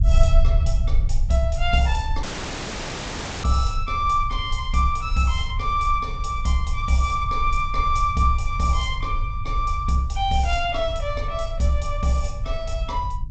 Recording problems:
lossy codec; G.722, log-spectral distance 3 dB, nothing above 7.8 kHz
rumble; below 64 Hz, SNR 4 dB
audio cutting out; at 2 s for 1 s

